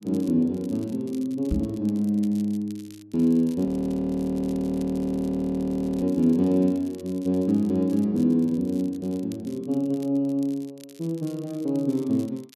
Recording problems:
crackling; vinyl, SNR 27 dB
knock on the microphone; at 1.5 s; peak +1 dB vs average level
audio freezing; at 3.5 s for 2.5 s

